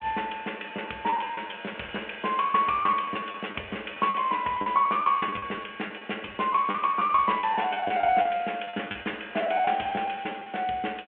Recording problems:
phone line; 260 Hz to 3.3 kHz, G.726
packet loss; 13% of the sound replaced, filled with the last packet

